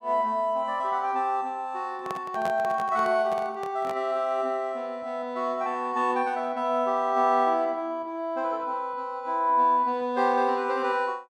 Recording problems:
microphone handling noise; from 2 to 4 s; peak -5 dB vs average level

